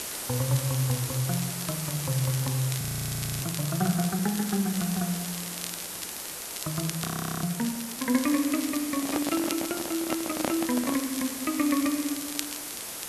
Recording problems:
hiss; slope -1 dB per octave, SNR 4 dB
crackling; vinyl, SNR 11 dB
audio freezing; at 3 s for 0.5 s and at 7 s
microphone handling noise; from 9 to 11 s; peak +4 dB vs average level

